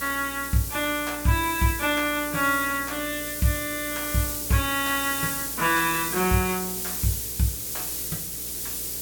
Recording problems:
hum; 60 Hz, harmonics up to 480 Hz, SNR 21 dB
background hiss; SNR 4 dB

